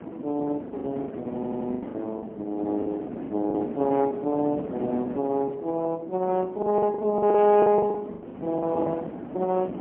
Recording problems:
phone line; 190 Hz to 3.3 kHz, AMR-NB, then MP3
wind noise; below 520 Hz, SNR 10 dB
lost packets; 10% of the sound replaced, filled with the last packet
audio stuttering; at 1.5 s

